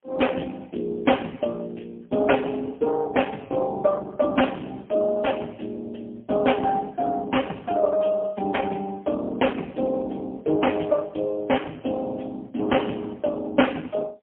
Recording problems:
phone line; 280 Hz to 3.3 kHz, AMR-NB, then MP3

